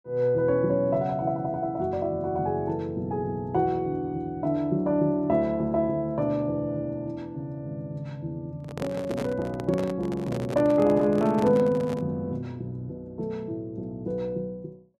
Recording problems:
microphone handling noise; from 8.5 to 12 s; peak -3 dB vs average level

